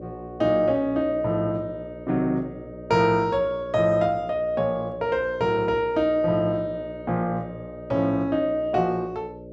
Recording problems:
hum; 60 Hz, harmonics up to 600 Hz, SNR 16 dB

